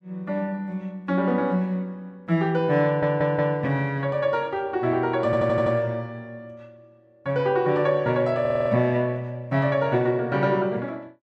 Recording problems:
audio stuttering; at 3 s, at 5.5 s and at 8.5 s

